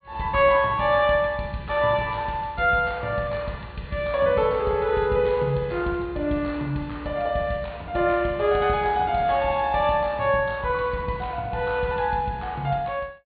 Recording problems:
low-pass filter; nothing above 4.5 kHz

